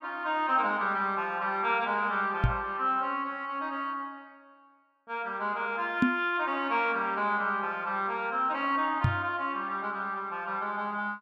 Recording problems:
microphone bump; at 2.5 s, at 6 s and at 9 s; peak +8 dB vs average level

